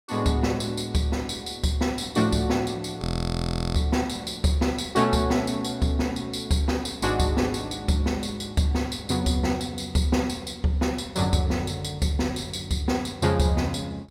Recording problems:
audio freezing; at 3 s for 0.5 s

